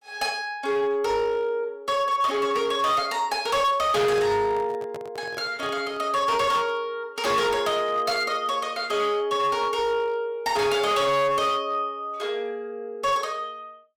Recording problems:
distorted audio; hard clipping, signal-to-distortion ratio 11 dB
microphone handling noise; from 4 to 6 s; peak -10 dB vs average level

